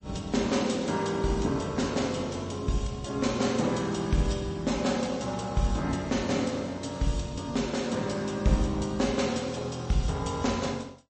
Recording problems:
lossy codec; MP3, log-spectral distance 4 dB, nothing above 8.2 kHz

